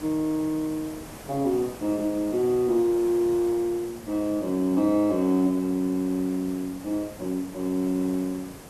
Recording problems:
background hiss; slope -5 dB per octave, SNR 17 dB

